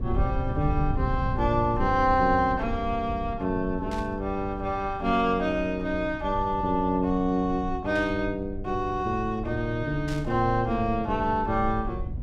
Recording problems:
low-frequency rumble; below 100 Hz, SNR 9 dB
static burst; at 4 s, at 8 s and at 10 s; peak -11 dB vs average level

